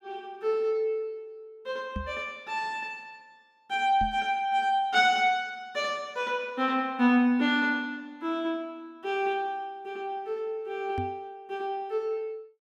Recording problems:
microphone bump; at 2 s, at 4 s and at 11 s; peak -3 dB vs average level

